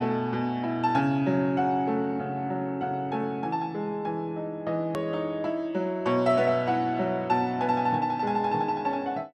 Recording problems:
click at an edit; at 5 s

